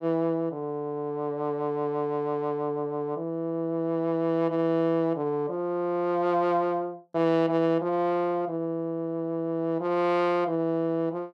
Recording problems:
none

